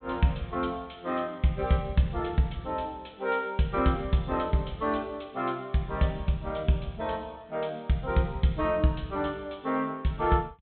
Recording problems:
treble cut off; nothing above 4 kHz

